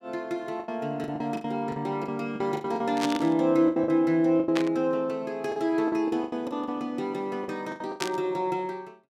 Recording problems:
lost packets; 13% of the sound replaced, filled with the last packet
static burst; at 3 s, at 4.5 s and at 8 s; peak +2 dB vs average level

